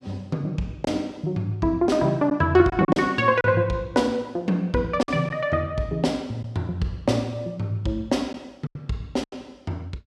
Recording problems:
packet loss; 4% of the sound replaced, filled with silence

